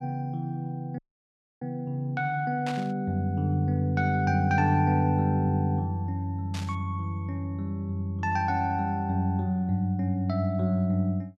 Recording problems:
dropout; at 1 s for 0.5 s
burst of static; at 2.5 s and at 6.5 s; peak -7 dB vs average level

